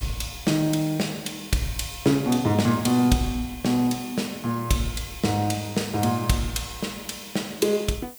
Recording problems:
background hiss; SNR 18 dB

